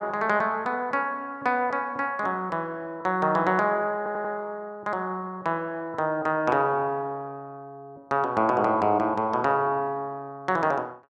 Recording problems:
stutter; at 4 s

